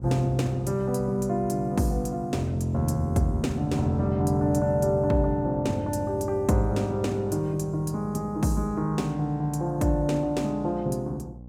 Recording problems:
mains hum; 60 Hz, harmonics up to 780 Hz, SNR 18 dB

